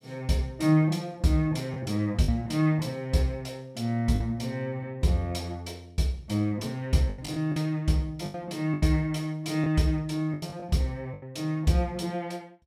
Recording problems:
packet loss; 5% of the sound replaced, filled with the last packet

